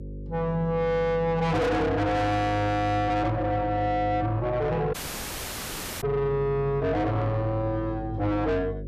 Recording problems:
distortion; soft clipping, signal-to-distortion ratio 7 dB
hum; 50 Hz, harmonics up to 550 Hz, SNR 12 dB
dropout; at 5 s for 1 s

